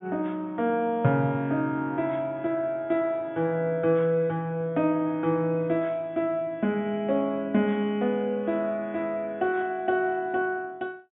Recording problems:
treble cut off; nothing above 4 kHz

